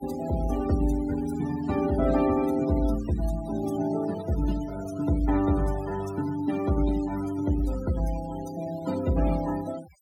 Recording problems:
denoising artefacts; signal-to-artefact ratio 14 dB

